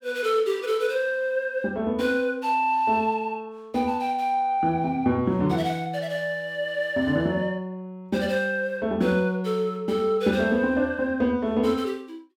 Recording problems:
none

